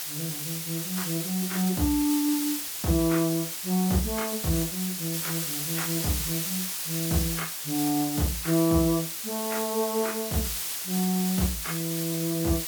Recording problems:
hiss; slope +2 dB per octave, SNR 2 dB

